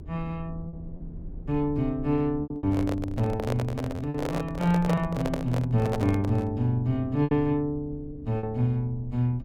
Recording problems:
low-frequency rumble; below 100 Hz, SNR 15 dB
packet loss; 5% of the sound replaced, filled with repeated pitch periods
microphone handling noise; from 2.5 to 6.5 s; peak +1 dB vs average level

